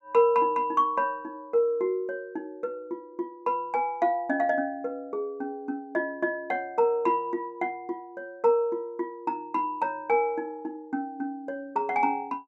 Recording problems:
none

